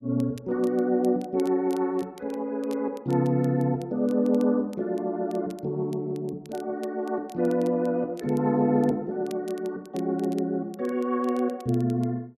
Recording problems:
crackling; vinyl, SNR 27 dB

